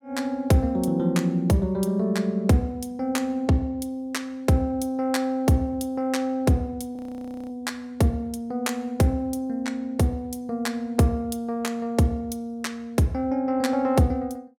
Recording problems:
frozen audio; at 7 s for 0.5 s

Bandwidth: 17 kHz